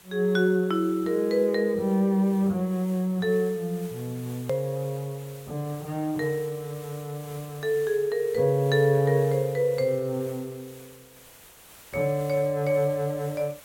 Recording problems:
hiss; slope -2 dB per octave, SNR 21 dB
click at an edit; at 4.5 s

